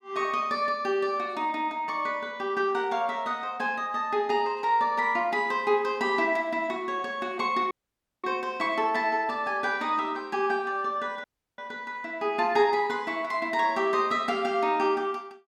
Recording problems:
dropout; at 7.5 s for 0.5 s and at 11 s

